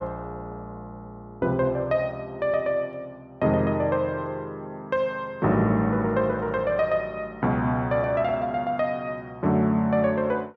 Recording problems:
none

